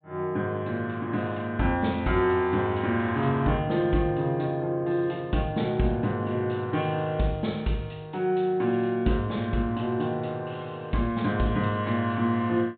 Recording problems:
low-pass filter; nothing above 4 kHz

